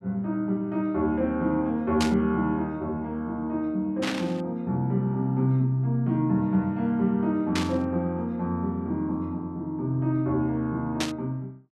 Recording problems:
burst of static; 4 times, first at 2 s; peak +2 dB vs average level

